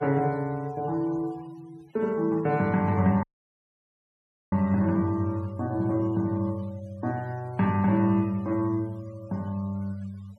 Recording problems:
noise reduction artefacts; signal-to-artefact ratio 27 dB
audio cutting out; at 3 s for 1.5 s

